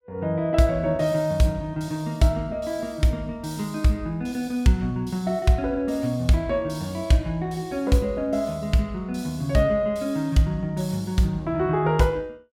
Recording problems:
none

